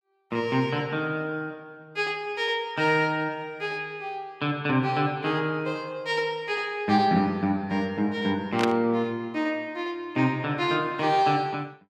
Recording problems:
burst of static; at 8.5 s; peak +2 dB vs average level

